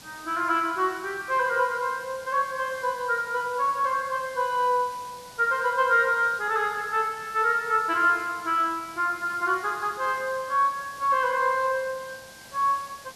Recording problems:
hiss; SNR 20 dB

